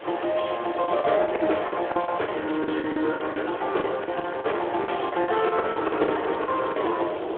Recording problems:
phone line; 280 Hz to 3.4 kHz, Speex
background hiss; SNR 19 dB
wind on the microphone; below 700 Hz, SNR 10 dB
packet loss; 15% of the sound replaced, filled with the last packet
crackling; from 1.5 to 2.5 s; loose cable, SNR 21 dB

